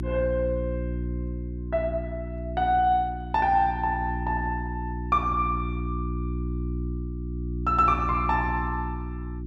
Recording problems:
hum; 60 Hz, harmonics up to 360 Hz, SNR 6 dB

